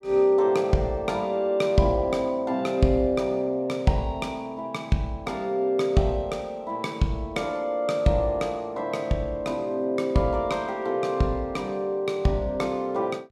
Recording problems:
none

